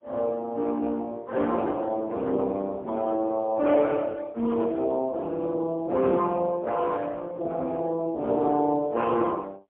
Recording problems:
phone line; 150 Hz to 2.3 kHz, AMR-NB, then MP3

